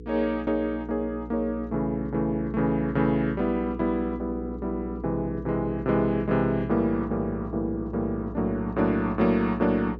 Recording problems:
treble cut off; nothing above 8 kHz
hum; 60 Hz, harmonics up to 480 Hz, SNR 12 dB

